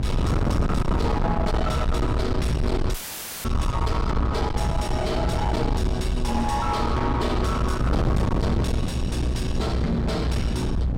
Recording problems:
distorted audio; soft clipping, signal-to-distortion ratio 7 dB
hum; 60 Hz, harmonics up to 840 Hz, SNR 6 dB
rumble; below 110 Hz, SNR 1 dB
wind noise; below 300 Hz, SNR 1 dB
dropout; at 3 s for 0.5 s; filled with static

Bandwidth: 16 kHz